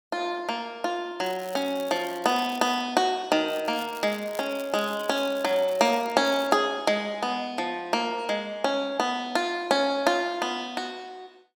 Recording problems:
crackling; from 1 to 3 s, from 3.5 to 6 s and at 6 s; loose cable, SNR 20 dB

